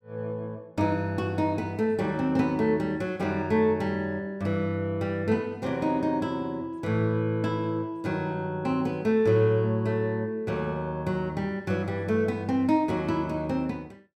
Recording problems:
none

